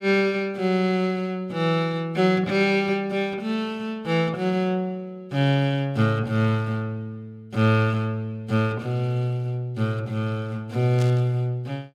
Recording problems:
burst of static; at 11 s; peak -9 dB vs average level

